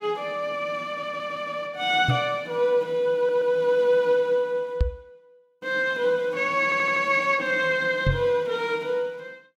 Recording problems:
stutter; at 1 s, at 3 s and at 6.5 s
microphone thump; at 2 s, at 5 s and at 8 s; peak +4 dB vs average level

